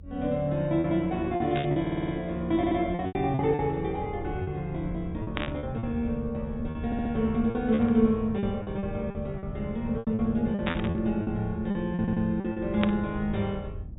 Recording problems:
treble missing; nothing above 4 kHz
low-frequency rumble; below 110 Hz, SNR 12 dB
lost packets; 10% of the sound replaced, filled with repeated pitch periods
burst of static; 5 times, first at 1.5 s; peak +2 dB vs average level
audio stuttering; 4 times, first at 2 s

